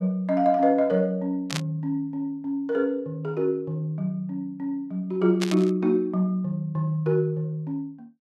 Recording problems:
static burst; at 1.5 s and at 5.5 s; peak 0 dB vs average level

